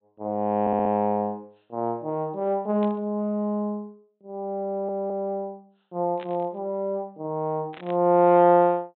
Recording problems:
treble cut off; nothing above 3.9 kHz
audio stuttering; at 0.5 s and at 4.5 s
static burst; at 3 s, at 6 s and at 7.5 s; peak -14 dB vs average level

